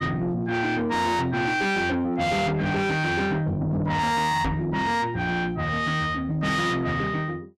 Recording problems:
distortion; soft clipping, signal-to-distortion ratio 8 dB
knock on the microphone; at 4.5 s; peak 0 dB vs average level

